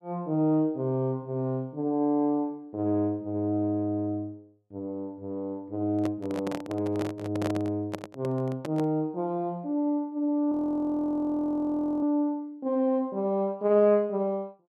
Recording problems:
handling noise; from 6 to 9 s; peak -1 dB vs average level
frozen audio; at 11 s for 1.5 s

